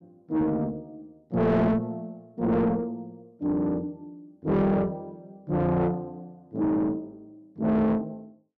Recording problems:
distorted audio; soft clipping, signal-to-distortion ratio 7 dB

